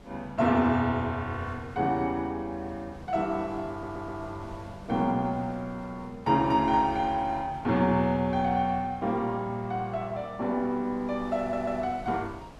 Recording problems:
wind noise; below 640 Hz, SNR 20 dB
stutter; at 3.5 s and at 11 s

